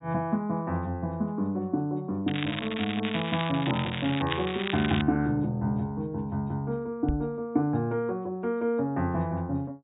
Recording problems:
low-pass filter; nothing above 4 kHz
crackle; from 2.5 to 5 s; loose cable, SNR 6 dB
knock on the microphone; at 7 s; peak +3 dB vs average level

